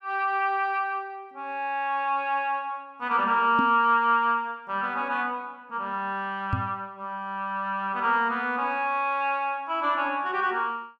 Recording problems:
microphone bump; at 3.5 s and at 6.5 s; peak +2 dB vs average level

